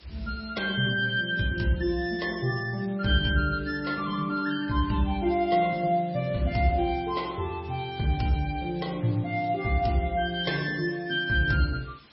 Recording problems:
lossy codec; MP3, log-spectral distance 4 dB, nothing above 5 kHz
background hiss; SNR 26 dB

